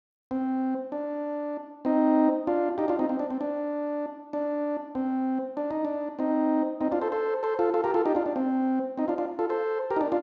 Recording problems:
none

